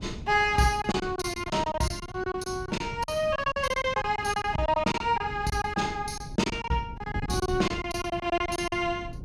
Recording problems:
wind on the microphone; below 200 Hz, SNR 13 dB
lost packets; 15% of the sound replaced, filled with silence

